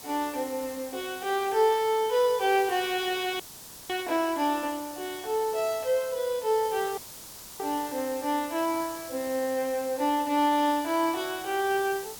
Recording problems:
background hiss; SNR 14 dB
dropout; at 3.5 s for 0.5 s and at 7 s for 0.5 s

